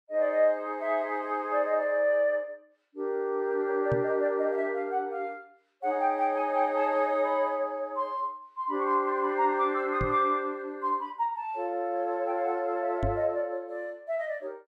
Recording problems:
knock on the microphone; at 4 s, at 10 s and at 13 s; peak +1 dB vs average level

